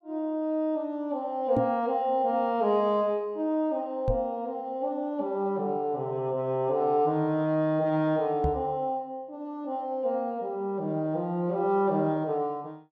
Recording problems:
knock on the microphone; at 1.5 s, at 4 s and at 8.5 s; peak +3 dB vs average level

